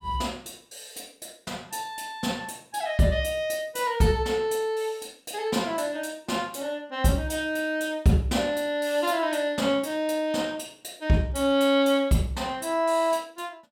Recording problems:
none

